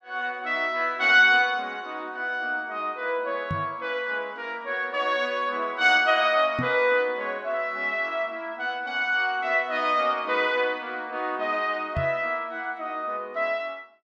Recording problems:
microphone bump; at 3.5 s, at 6.5 s and at 12 s; peak -1 dB vs average level

